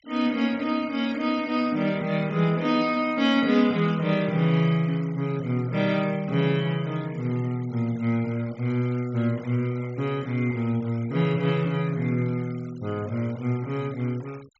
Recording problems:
treble cut off; nothing above 8 kHz
denoising artefacts; signal-to-artefact ratio 23 dB

